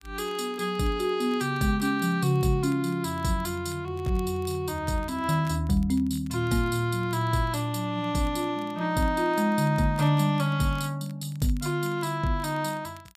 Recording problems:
crackling; vinyl, SNR 29 dB

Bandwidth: 15 kHz